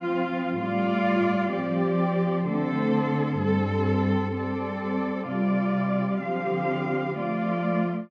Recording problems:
none

